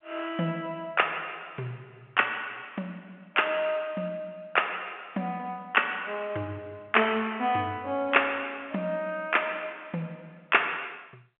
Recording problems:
phone line; 260 Hz to 3.3 kHz, G.711

